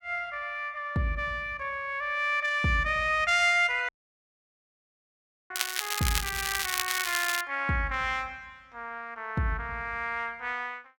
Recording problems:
dropout; at 4 s for 1.5 s
crackle; from 5.5 to 7.5 s; loose cable, SNR 2 dB

